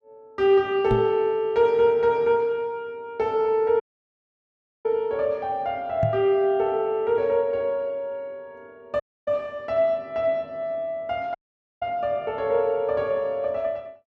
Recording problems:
microphone thump; at 1 s and at 6 s; peak +1 dB vs average level
audio cutting out; at 4 s for 1 s, at 9 s and at 11 s

